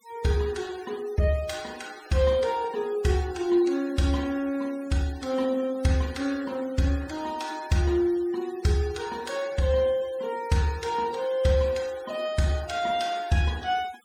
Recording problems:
noise reduction artefacts; signal-to-artefact ratio 20 dB

